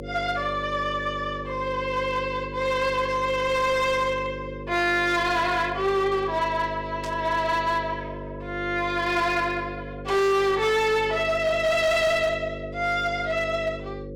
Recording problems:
distortion; hard clipping, signal-to-distortion ratio 12 dB
electrical hum; 50 Hz, harmonics up to 550 Hz, SNR 12 dB
burst of static; at 7 s, at 10 s and at 12 s; peak -10 dB vs average level

